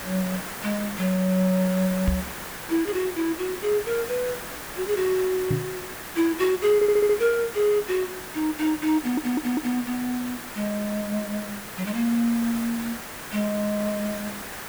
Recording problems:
hiss; SNR 9 dB
knock on the microphone; at 2 s and at 5.5 s; peak +4 dB vs average level
stutter; at 7 s and at 9 s

